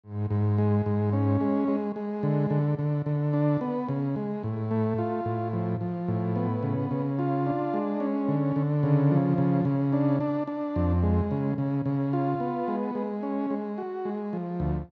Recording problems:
none

